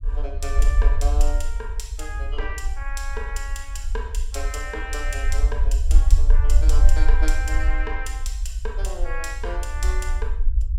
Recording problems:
low-frequency rumble; below 52 Hz, SNR -8 dB

